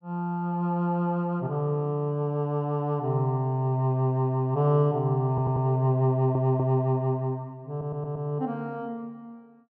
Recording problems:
stutter; at 5.5 s, at 6 s and at 7.5 s

